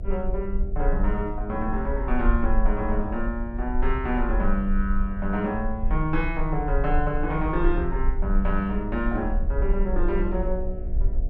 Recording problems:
hum; 60 Hz, harmonics up to 720 Hz, SNR 16 dB
low-frequency rumble; below 44 Hz, strongest tone 22 Hz, SNR 2 dB

